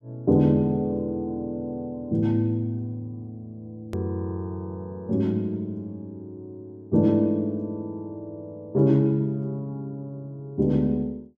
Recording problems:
edit click; at 4 s

